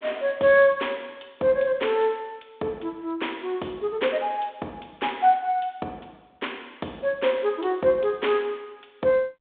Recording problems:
phone line; 280 Hz to 3.6 kHz, G.726

